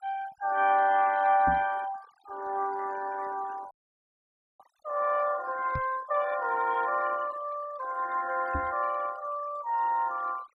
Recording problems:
denoising artefacts; signal-to-artefact ratio 20 dB
microphone thump; at 1.5 s, at 6 s and at 8.5 s; peak -3 dB vs average level
frozen audio; at 3.5 s for 1 s

